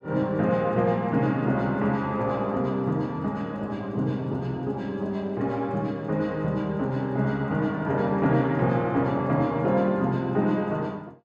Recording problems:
none

